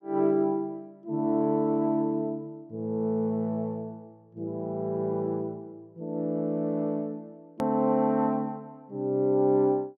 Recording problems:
hard cut with a click; at 7.5 s

